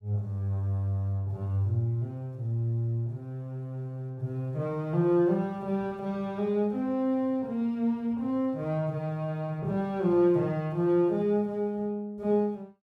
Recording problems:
none

